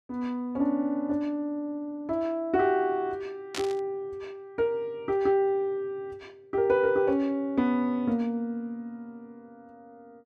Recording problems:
burst of static; at 3.5 s; peak -2 dB vs average level

